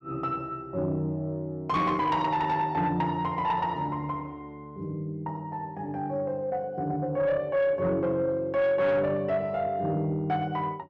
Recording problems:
distortion; soft clipping, signal-to-distortion ratio 12 dB

